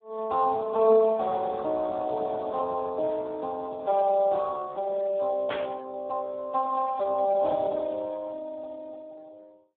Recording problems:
telephone audio; 280 Hz to 2.1 kHz, Speex
burst of static; at 5.5 s; peak -2 dB vs average level

